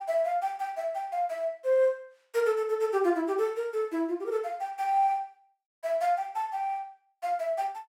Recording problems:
none

